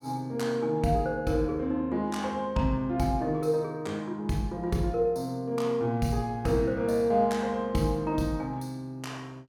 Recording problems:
none

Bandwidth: 17.5 kHz